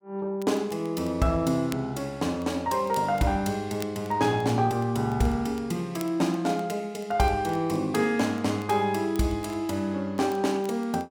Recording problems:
crackling; vinyl, SNR 24 dB

